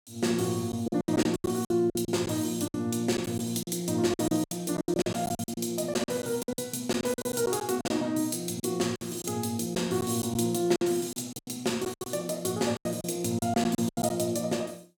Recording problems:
packet loss; 14% of the sound replaced, filled with silence

